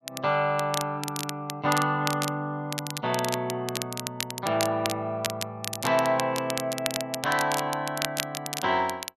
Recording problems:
crackle; vinyl, SNR 6 dB

